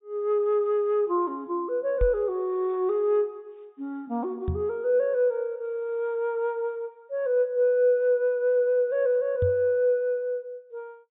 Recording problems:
treble cut off; nothing above 4 kHz
knock on the microphone; at 2 s, at 4.5 s and at 9.5 s; peak +1 dB vs average level

